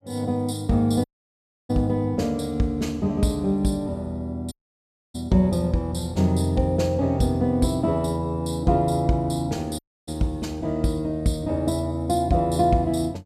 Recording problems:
audio cutting out; at 1 s for 0.5 s, at 4.5 s for 0.5 s and at 10 s

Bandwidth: 14 kHz